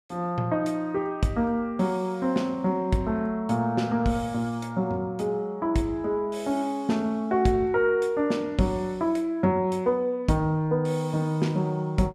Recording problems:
none

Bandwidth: 15 kHz